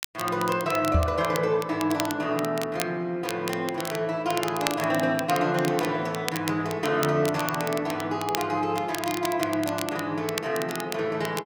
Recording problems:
crackling; vinyl, SNR 10 dB
microphone bump; at 1 s; peak +6 dB vs average level

